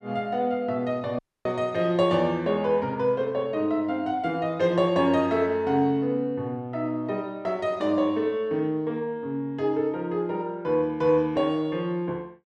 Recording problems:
dropout; at 1 s

